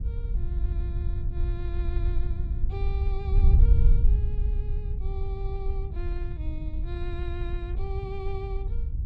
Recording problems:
wind on the microphone; below 70 Hz, SNR -13 dB

